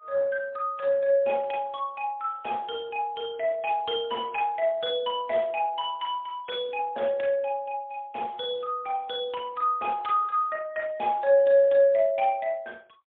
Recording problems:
phone line; 260 Hz to 3.6 kHz, AMR-NB, then MP3

